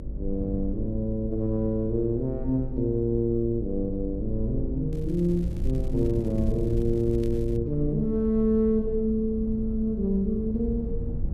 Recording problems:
hum; 50 Hz, harmonics up to 600 Hz, SNR 19 dB
low-frequency rumble; below 74 Hz, strongest tone 20 Hz, SNR 8 dB
crackling; from 5 to 7.5 s; loose cable, SNR 29 dB

